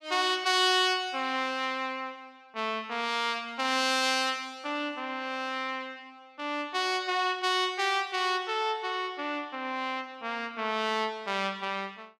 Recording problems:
none

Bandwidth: 15 kHz